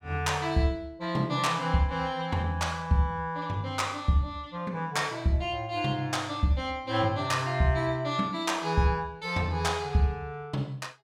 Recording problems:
none

